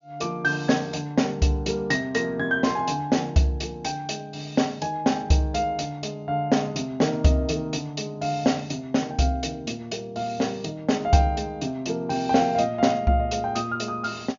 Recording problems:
treble cut off; nothing above 7 kHz

